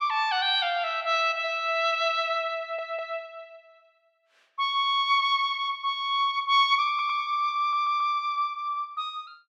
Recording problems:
audio stuttering; at 2.5 s, at 7 s and at 7.5 s

